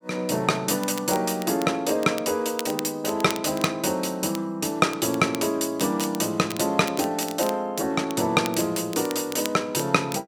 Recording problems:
crackle; vinyl, SNR 15 dB

